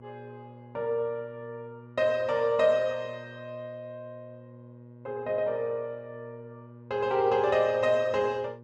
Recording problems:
hum; 60 Hz, harmonics up to 960 Hz, SNR 21 dB

